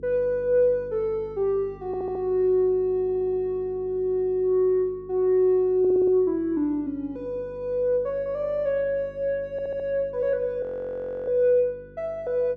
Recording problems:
hum; 50 Hz, harmonics up to 450 Hz, SNR 23 dB
audio stuttering; 4 times, first at 2 s
frozen audio; at 11 s for 0.5 s

